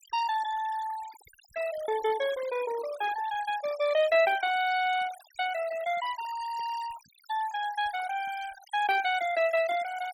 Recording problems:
noise reduction artefacts; signal-to-artefact ratio 16 dB

